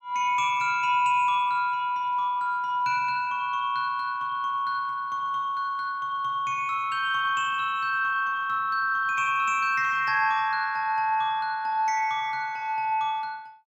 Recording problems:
none

